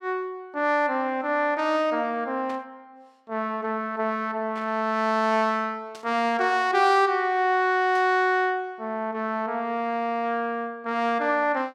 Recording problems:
burst of static; 4 times, first at 2.5 s; peak -14 dB vs average level

